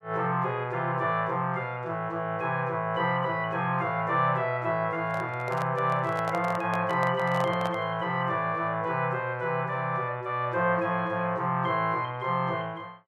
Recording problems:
handling noise; from 5 to 8 s; peak -3 dB vs average level

